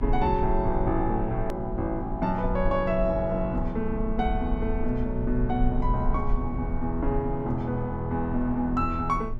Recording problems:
electrical hum; 60 Hz, harmonics up to 1.2 kHz, SNR 13 dB
rumble; below 50 Hz, SNR 7 dB
edit click; at 1.5 s

